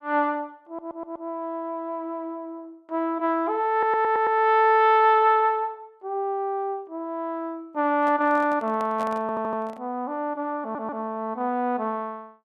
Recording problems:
stutter; 4 times, first at 0.5 s
microphone handling noise; from 8 to 10 s; peak -9 dB vs average level

